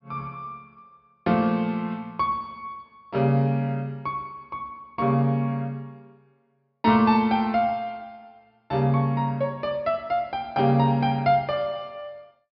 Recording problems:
treble missing; nothing above 5.5 kHz

